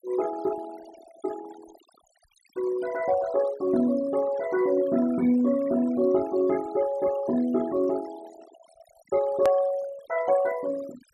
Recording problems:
denoising artefacts; signal-to-artefact ratio 16 dB
click at an edit; at 9.5 s

